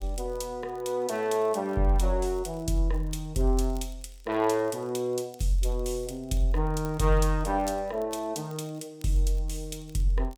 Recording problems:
crackle; vinyl, SNR 29 dB

